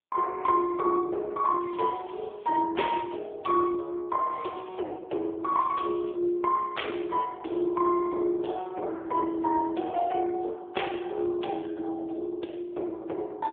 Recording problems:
phone line; 280 Hz to 3.4 kHz, AMR-NB
crackle; from 1.5 to 2.5 s, at 4.5 s and at 5.5 s; loose cable, SNR 27 dB

